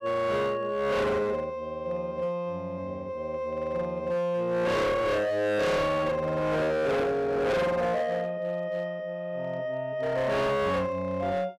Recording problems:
distortion; hard clipping, signal-to-distortion ratio 6 dB

